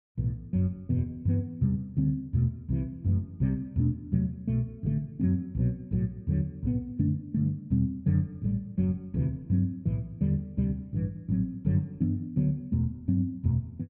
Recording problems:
none

